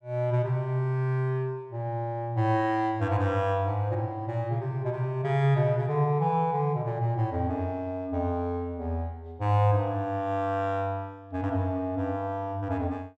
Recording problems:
none

